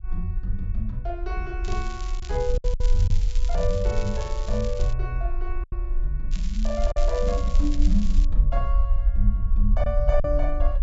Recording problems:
treble cut off; nothing above 8 kHz
rumble; below 46 Hz, SNR -3 dB
lost packets; 3% of the sound replaced, filled with silence
crackle; from 1.5 to 5 s and from 6.5 to 8.5 s; loose cable, SNR 13 dB

